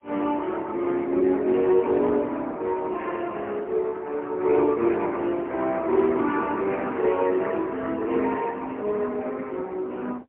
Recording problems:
phone line; 240 Hz to 3.2 kHz, AMR-NB, then MP3

